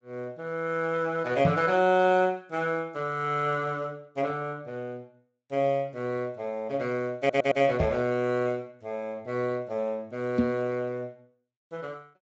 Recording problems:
codec artefacts; Speex, log-spectral distance 2 dB
microphone thump; at 1.5 s, at 8 s and at 10 s; peak +8 dB vs average level
audio stuttering; at 7 s

